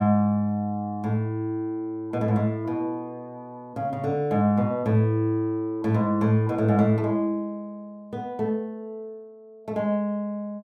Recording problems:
none

